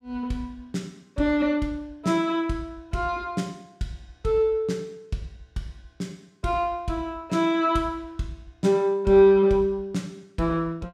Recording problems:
none

